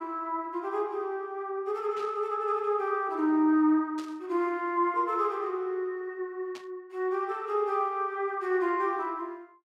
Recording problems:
static burst; at 2 s, at 4 s and at 6.5 s; peak -12 dB vs average level

